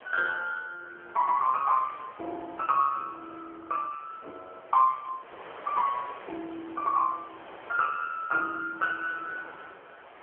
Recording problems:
phone line; 370 Hz to 3.1 kHz, AMR-NB
wind noise; below 1.8 kHz, SNR 18 dB

